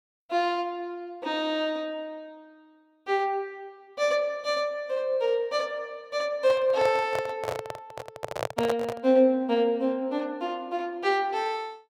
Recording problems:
microphone handling noise; from 6.5 to 9 s; peak +2 dB vs average level

